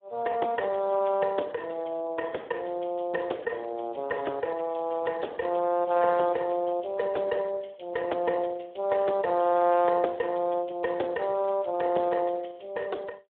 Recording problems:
telephone audio; 300 Hz to 2.7 kHz, Speex

